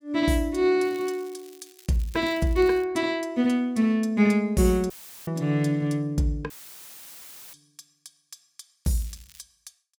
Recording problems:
crackling; from 1 to 3 s and at 9 s; loose cable, SNR 26 dB
dropout; at 5 s and at 6.5 s for 1 s; filled with static

